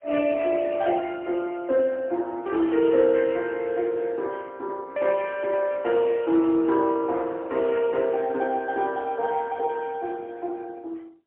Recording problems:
phone line; 260 Hz to 3.3 kHz, AMR-NB, then MP3

